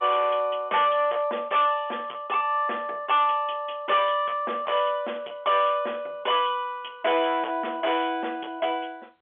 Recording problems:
phone line; 340 Hz to 3.4 kHz, G.711
distortion; hard clipping, uneven, signal-to-distortion ratio 11 dB

